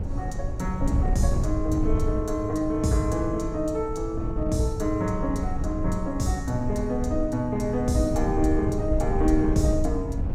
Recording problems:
wind on the microphone; below 100 Hz, SNR 4 dB

